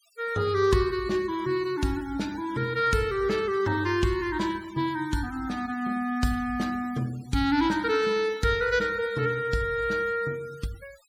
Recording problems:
noise reduction artefacts; signal-to-artefact ratio 21 dB

